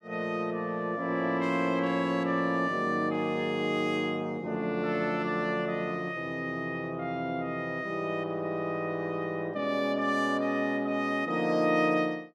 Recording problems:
none

